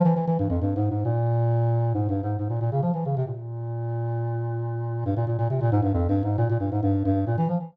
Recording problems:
none

